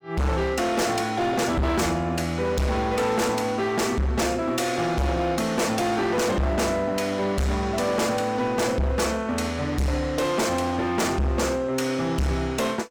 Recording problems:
distortion; hard clipping, signal-to-distortion ratio 7 dB

